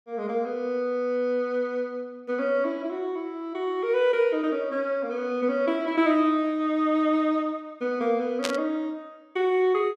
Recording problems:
static burst; at 8.5 s; peak +2 dB vs average level

